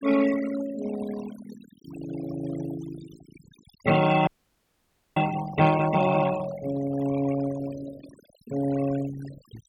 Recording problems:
denoising artefacts; signal-to-artefact ratio 13 dB
frozen audio; at 4.5 s for 1 s

